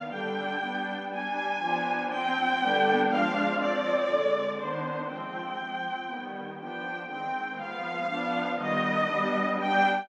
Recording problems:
none

